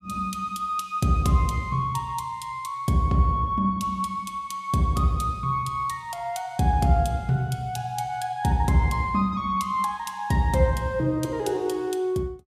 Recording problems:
none

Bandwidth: 15 kHz